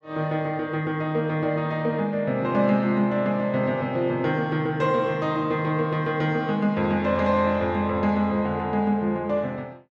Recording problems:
none

